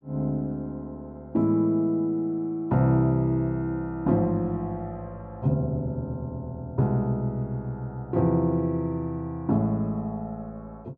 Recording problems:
none

